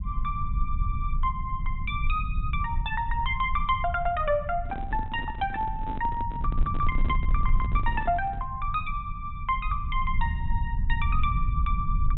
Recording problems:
low-pass filter; nothing above 3.9 kHz
rumble; below 66 Hz, strongest tone 20 Hz, SNR 2 dB
microphone handling noise; from 4.5 to 8.5 s; peak -4 dB vs average level

